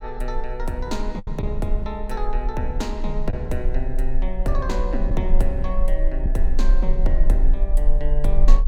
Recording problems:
rumble; below 34 Hz, strongest tone 18 Hz, SNR -3 dB
packet loss; 1.7% of the sound replaced, filled with the last packet

